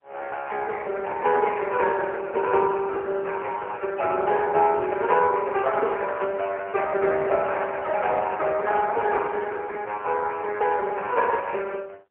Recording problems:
telephone audio; 340 Hz to 3.2 kHz, AMR-NB, then MP3

